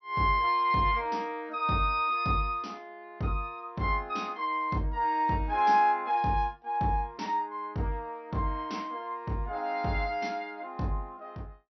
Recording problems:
low-pass filter; nothing above 5.9 kHz

